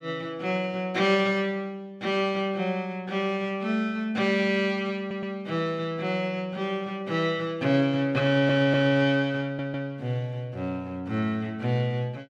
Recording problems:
audio stuttering; at 5 s, at 8.5 s and at 9.5 s

